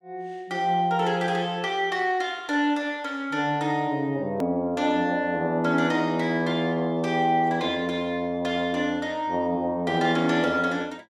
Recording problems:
edit click; at 4.5 s

